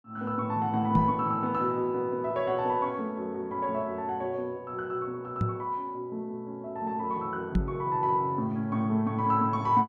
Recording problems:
knock on the microphone; at 1 s, at 5.5 s and at 7.5 s; peak +7 dB vs average level

